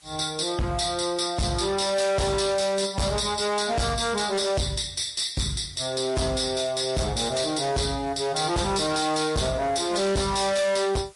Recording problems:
codec artefacts; MP3, log-spectral distance 6 dB
distortion; hard clipping, signal-to-distortion ratio 6 dB
background hiss; slope +1 dB per octave, SNR 28 dB

